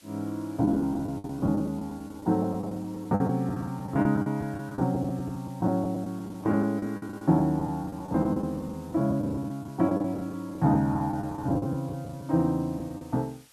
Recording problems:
hiss; slope +1 dB per octave, SNR 27 dB
lost packets; 15% of the sound replaced, filled with the last packet

